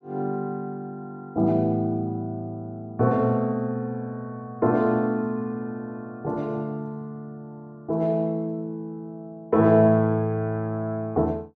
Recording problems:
none

